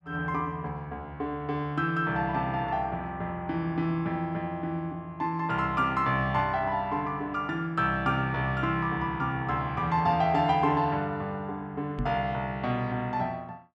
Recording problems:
microphone bump; at 12 s; peak 0 dB vs average level

